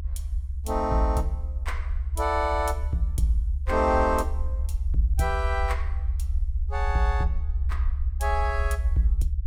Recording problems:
low-frequency rumble; below 70 Hz, SNR 1 dB

